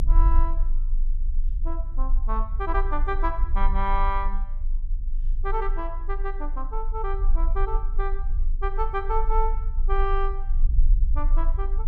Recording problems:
rumble; below 38 Hz, strongest tone 24 Hz, SNR -3 dB

